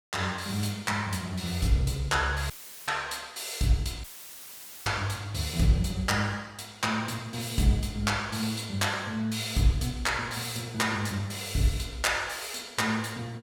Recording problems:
audio cutting out; at 2.5 s and at 4 s for 1 s; filled with static

